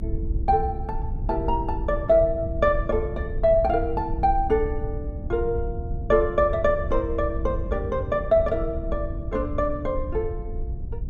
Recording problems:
low-frequency rumble; below 86 Hz, SNR 7 dB

